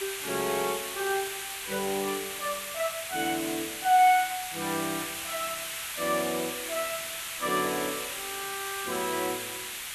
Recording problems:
hiss; SNR 4 dB

